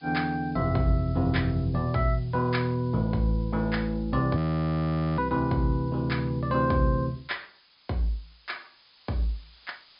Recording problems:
treble cut off; nothing above 5.1 kHz
background hiss; slope +3 dB per octave, SNR 30 dB
frozen audio; at 4.5 s for 1 s

